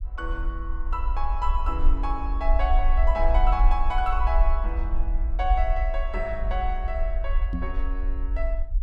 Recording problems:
rumble; below 50 Hz, strongest tone 22 Hz, SNR -3 dB
knock on the microphone; at 7.5 s; peak +4 dB vs average level

